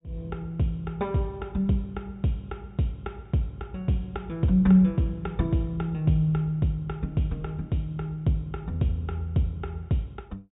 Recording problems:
treble missing; nothing above 4 kHz

